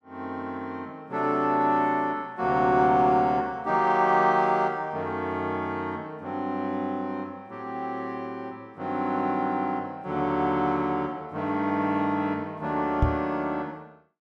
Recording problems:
microphone bump; at 13 s; peak +6 dB vs average level

